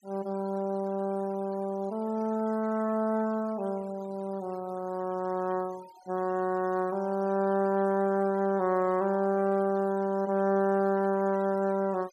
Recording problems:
denoising artefacts; signal-to-artefact ratio 24 dB

